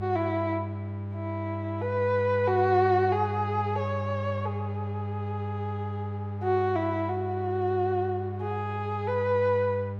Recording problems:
electrical hum; 50 Hz, harmonics up to 800 Hz, SNR 6 dB

